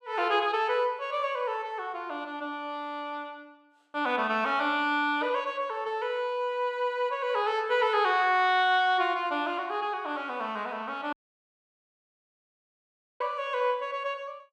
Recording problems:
audio cutting out; at 11 s for 2 s

